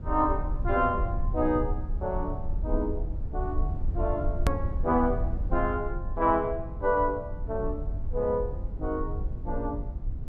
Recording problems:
rumble; below 76 Hz, SNR 4 dB
hard cut with a click; at 4.5 s

